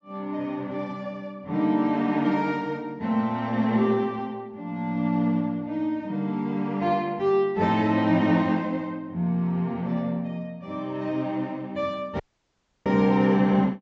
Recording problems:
treble missing; nothing above 8 kHz
audio cutting out; at 12 s for 0.5 s

